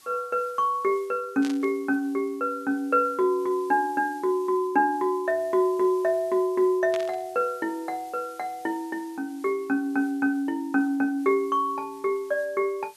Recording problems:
background hiss; slope +1 dB per octave, SNR 27 dB
static burst; at 1.5 s and at 7 s; peak -8 dB vs average level

